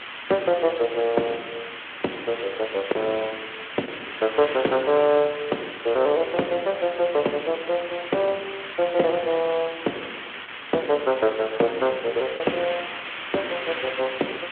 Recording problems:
telephone audio; 240 Hz to 3.4 kHz, Speex
background hiss; SNR 8 dB
packet loss; 0.9% of the sound replaced, filled with the last packet

